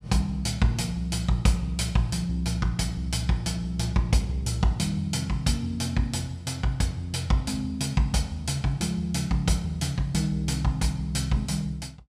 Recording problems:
none

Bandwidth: 15.5 kHz